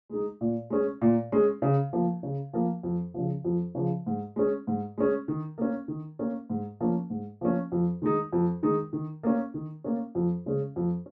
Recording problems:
none

